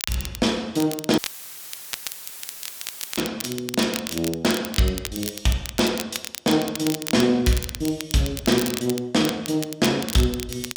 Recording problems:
crackling; vinyl, SNR 9 dB
dropout; at 1 s for 2 s; filled with static

